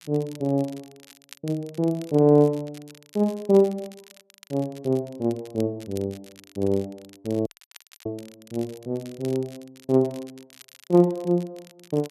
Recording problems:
crackling; vinyl, SNR 24 dB
audio cutting out; at 7.5 s for 0.5 s

